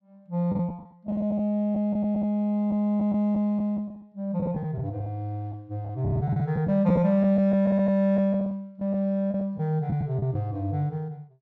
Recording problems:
lost packets; 8% of the sound replaced, filled with the last packet

